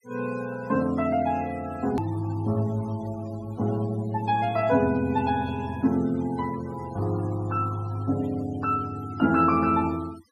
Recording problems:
noise reduction artefacts; signal-to-artefact ratio 20 dB
edit click; at 2 s

